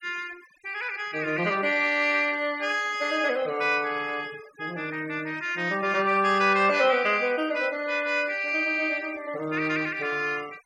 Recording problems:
denoising artefacts; signal-to-artefact ratio 23 dB

